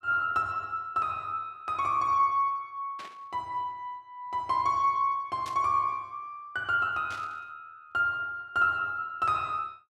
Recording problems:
burst of static; at 3 s, at 5.5 s and at 7 s; peak -10 dB vs average level

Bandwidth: 14.5 kHz